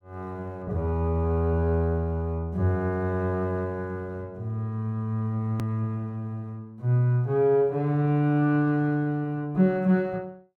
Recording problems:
edit click; at 5.5 s

